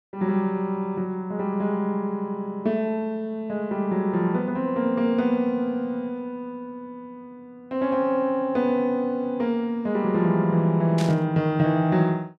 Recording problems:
burst of static; at 11 s; peak -6 dB vs average level

